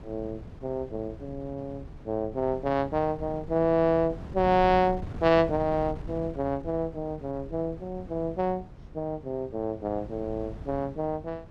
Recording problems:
wind noise; below 210 Hz, SNR 14 dB

